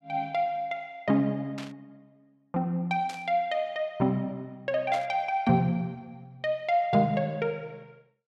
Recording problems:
static burst; at 1.5 s, at 3 s and at 5 s; peak -8 dB vs average level

